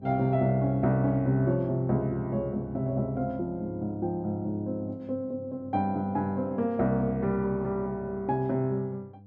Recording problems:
hum; 50 Hz, harmonics up to 700 Hz, SNR 22 dB

